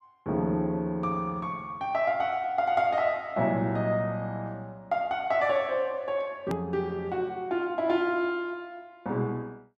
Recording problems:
hard cut with a click; at 6.5 s

